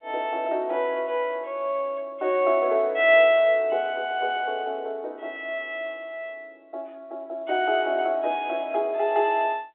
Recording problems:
phone line; 320 Hz to 3.7 kHz, G.711

